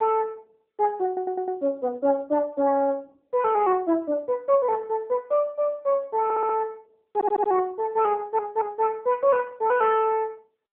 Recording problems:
telephone audio; 300 Hz to 2.6 kHz, AMR-NB
audio stuttering; 4 times, first at 1 s

